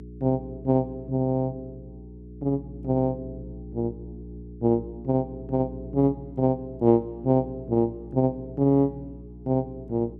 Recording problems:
mains hum; 60 Hz, harmonics up to 420 Hz, SNR 16 dB

